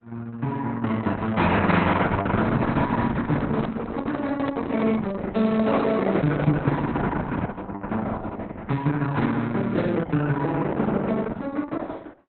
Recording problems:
lossy codec; Opus, log-spectral distance 4 dB, nothing above 4 kHz
handling noise; from 3 to 7 s; peak -2 dB vs average level

